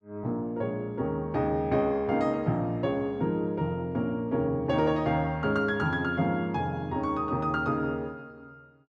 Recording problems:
none

